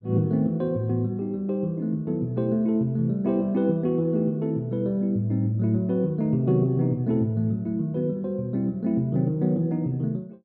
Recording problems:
none

